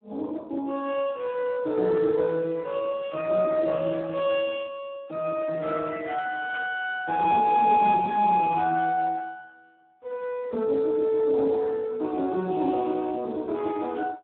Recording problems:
telephone audio; 220 Hz to 3.3 kHz, Speex
burst of static; at 6.5 s; peak -12 dB vs average level

